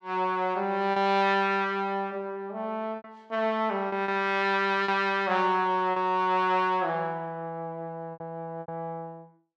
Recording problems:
packet loss; 5% of the sound replaced, filled with repeated pitch periods

